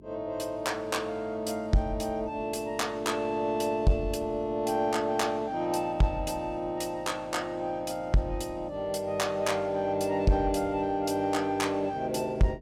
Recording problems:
distortion; soft clipping, signal-to-distortion ratio 12 dB
electrical hum; 50 Hz, harmonics up to 400 Hz, SNR 22 dB

